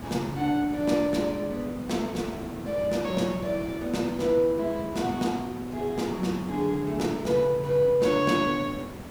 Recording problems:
hiss; slope -7 dB per octave, SNR 13 dB

